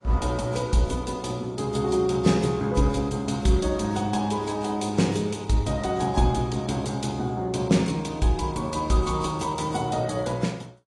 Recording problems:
lossy codec; AAC, log-spectral distance 3 dB, nothing above 10.1 kHz

